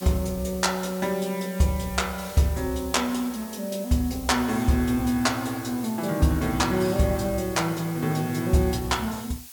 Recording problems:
hiss; slope +4 dB per octave, SNR 16 dB

